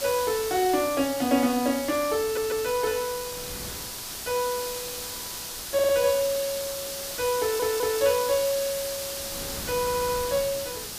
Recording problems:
hiss; SNR 6 dB
wind on the microphone; below 940 Hz, SNR 20 dB
stutter; 4 times, first at 2 s

